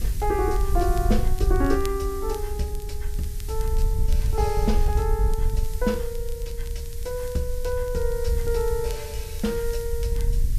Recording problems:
background hiss; SNR 14 dB
wind on the microphone; below 62 Hz, SNR 0 dB
crackle; vinyl, SNR 21 dB

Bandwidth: 14.5 kHz